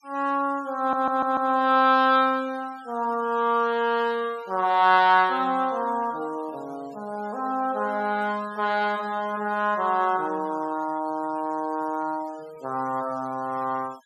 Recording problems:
noise reduction artefacts; signal-to-artefact ratio 26 dB
audio stuttering; at 1 s

